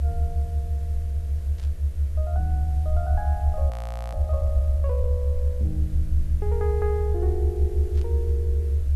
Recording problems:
hum; 60 Hz, harmonics up to 660 Hz, SNR 19 dB
background hiss; slope -2 dB per octave, SNR 21 dB
low-frequency rumble; below 76 Hz, strongest tone 72 Hz, SNR -9 dB
static burst; at 1.5 s and at 8 s; peak -13 dB vs average level
frozen audio; at 3.5 s

